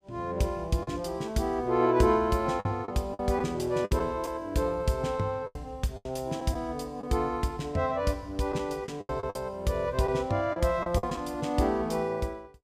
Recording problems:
lost packets; 6% of the sound replaced, filled with the last packet

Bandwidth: 15.5 kHz